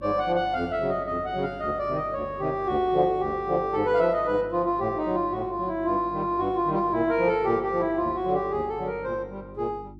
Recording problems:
electrical hum; 50 Hz, harmonics up to 350 Hz, SNR 20 dB

